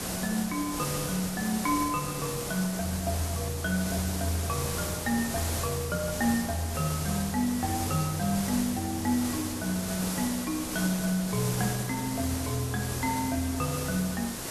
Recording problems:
background hiss; SNR 4 dB

